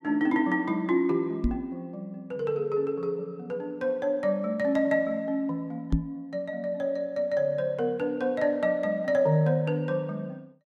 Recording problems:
knock on the microphone; at 1.5 s and at 6 s; peak +6 dB vs average level

